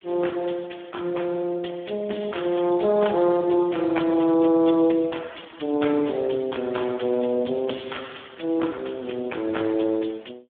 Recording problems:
phone line; 220 Hz to 3.5 kHz, Speex

